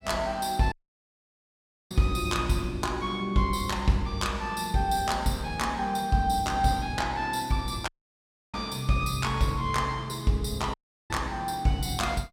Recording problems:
audio cutting out; at 0.5 s for 1 s, at 8 s for 0.5 s and at 11 s

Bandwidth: 16.5 kHz